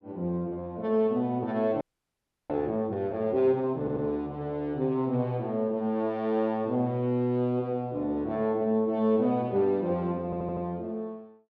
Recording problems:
audio freezing; at 2 s for 0.5 s
stutter; at 4 s and at 10 s

